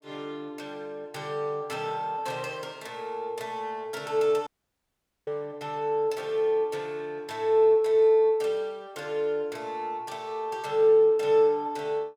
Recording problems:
dropout; at 4.5 s for 1 s

